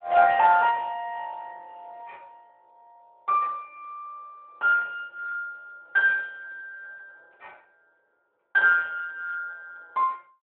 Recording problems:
telephone audio; 370 Hz to 3.1 kHz, Speex

